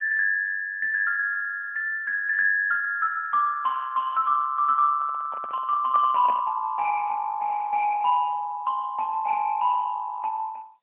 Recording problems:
phone line; 280 Hz to 2.8 kHz, AMR-NB, then MP3
handling noise; from 5 to 6.5 s; peak -6 dB vs average level

